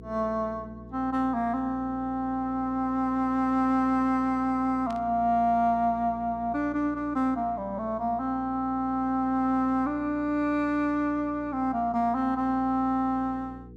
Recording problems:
electrical hum; 60 Hz, harmonics up to 480 Hz, SNR 20 dB
static burst; at 5 s; peak -16 dB vs average level

